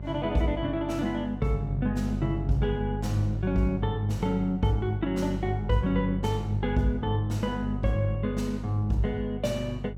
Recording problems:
hum; 50 Hz, harmonics up to 600 Hz, SNR 6 dB

